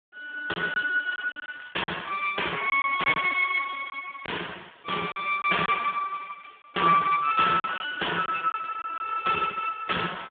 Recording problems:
telephone audio; 240 Hz to 3.4 kHz, Speex
lost packets; 5% of the sound replaced, filled with silence
crackle; at 1 s; loose cable, SNR 27 dB

